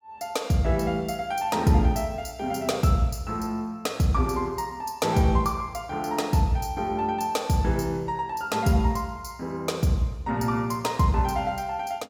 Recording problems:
none

